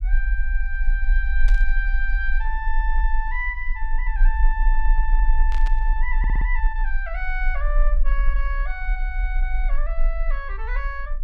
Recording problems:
rumble; below 38 Hz, strongest tone 20 Hz, SNR -6 dB
burst of static; at 1.5 s and at 5.5 s; peak -5 dB vs average level
audio stuttering; at 6 s

